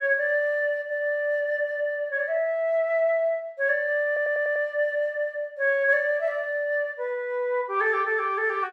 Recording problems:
stutter; at 4 s

